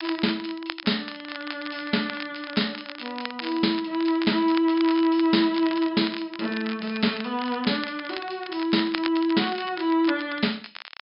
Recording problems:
treble cut off; nothing above 5.5 kHz
crackle; vinyl, SNR 12 dB

